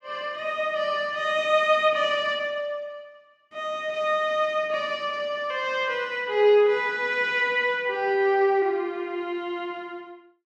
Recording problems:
none

